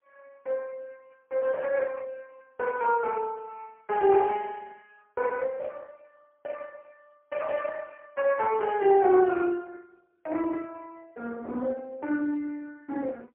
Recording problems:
phone line; 220 Hz to 3 kHz, AMR-NB, then MP3

